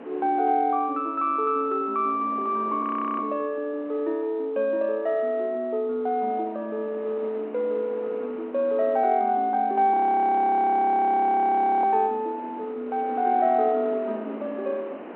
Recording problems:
phone line; 240 Hz to 3.4 kHz, G.711
wind on the microphone; below 870 Hz, SNR 19 dB
audio freezing; at 3 s and at 10 s for 2 s

